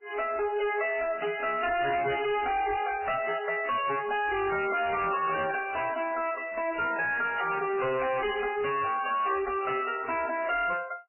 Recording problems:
lossy codec; MP3, then AAC, log-spectral distance 6 dB, nothing above 2.9 kHz
distorted audio; hard clipping, uneven, signal-to-distortion ratio 6 dB

